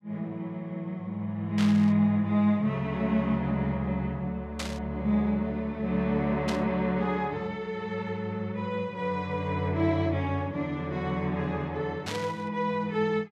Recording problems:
static burst; 4 times, first at 1.5 s; peak -2 dB vs average level

